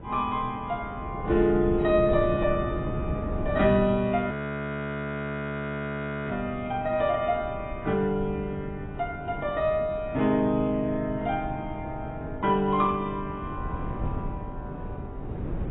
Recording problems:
codec artefacts; AAC, log-spectral distance 2 dB, nothing above 3.6 kHz
wind noise; below 270 Hz, SNR 9 dB
frozen audio; at 4.5 s for 2 s

